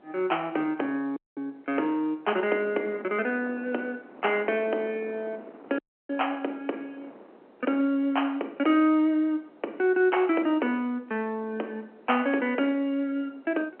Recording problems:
telephone audio; 260 Hz to 3.1 kHz, G.711
wind on the microphone; below 710 Hz, SNR 22 dB
dropout; at 1 s and at 6 s

